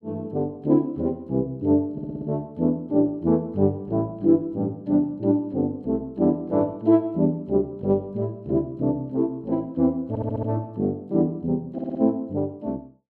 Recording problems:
stutter; at 2 s, at 10 s and at 12 s

